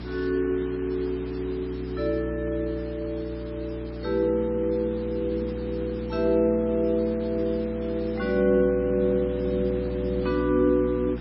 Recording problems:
codec artefacts; MP3, log-spectral distance 4 dB, nothing above 5 kHz
hum; 60 Hz, harmonics up to 360 Hz, SNR 10 dB
background hiss; SNR 20 dB

